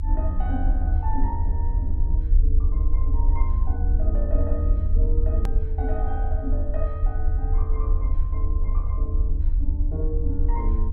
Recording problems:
rumble; below 66 Hz, SNR -11 dB
hard cut with a click; at 5.5 s

